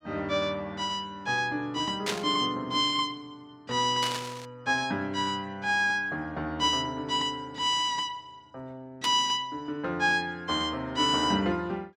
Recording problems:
burst of static; at 2 s, at 4 s and at 9 s; peak +2 dB vs average level

